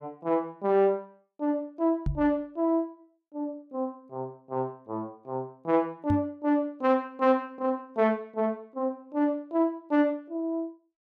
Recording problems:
microphone bump; at 2 s and at 6 s; peak +2 dB vs average level

